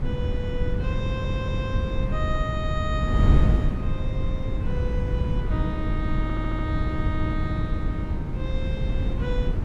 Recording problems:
wind noise; below 140 Hz, SNR -8 dB
stutter; at 1 s and at 6 s

